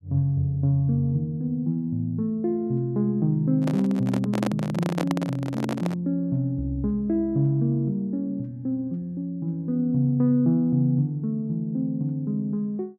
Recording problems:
microphone handling noise; from 3.5 to 6 s; peak +1 dB vs average level

